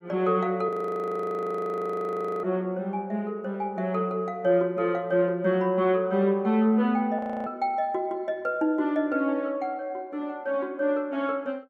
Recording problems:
audio freezing; at 0.5 s for 1.5 s and at 7 s

